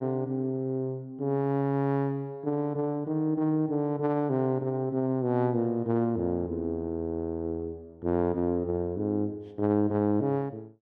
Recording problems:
none

